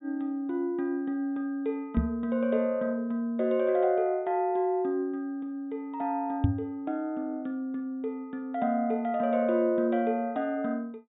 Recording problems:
low-pass filter; nothing above 4 kHz
microphone thump; at 2 s and at 6.5 s; peak +8 dB vs average level

